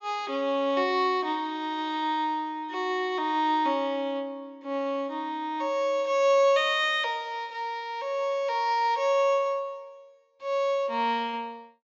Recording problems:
low-pass filter; nothing above 8 kHz

